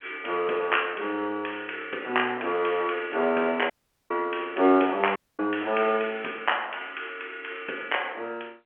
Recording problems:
phone line; 300 Hz to 3.2 kHz, G.711
dropout; at 3.5 s and at 5 s

